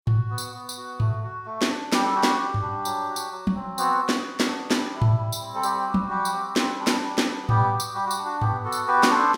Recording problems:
none

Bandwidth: 17 kHz